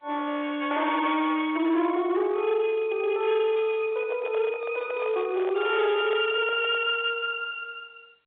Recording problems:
phone line; 300 Hz to 3.6 kHz, G.711
distorted audio; hard clipping, uneven, signal-to-distortion ratio 10 dB
handling noise; from 4 to 7 s; peak -7 dB vs average level

